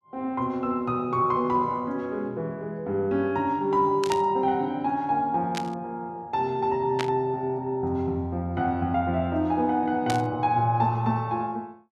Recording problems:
static burst; 4 times, first at 4 s; peak 0 dB vs average level

